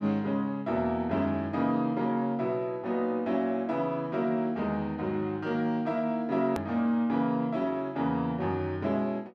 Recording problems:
click at an edit; at 6.5 s

